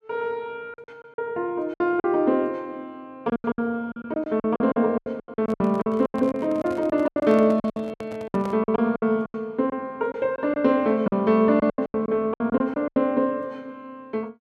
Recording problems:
packet loss; 15% of the sound replaced, filled with silence
microphone handling noise; from 5.5 to 8.5 s; peak -8 dB vs average level

